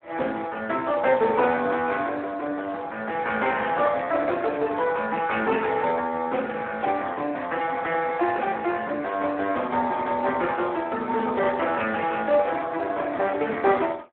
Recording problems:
phone line; 240 Hz to 3.1 kHz, Speex

